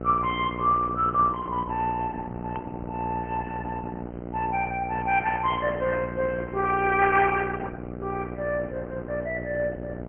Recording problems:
treble cut off; nothing above 3.2 kHz
lossy codec; Opus, log-spectral distance 3 dB
hum; 60 Hz, harmonics up to 1.6 kHz, SNR 10 dB
click at an edit; at 2.5 s

